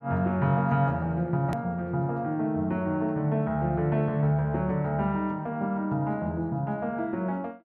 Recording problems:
click at an edit; at 1.5 s

